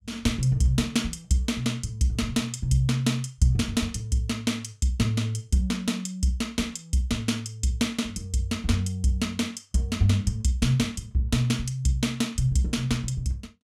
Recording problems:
none

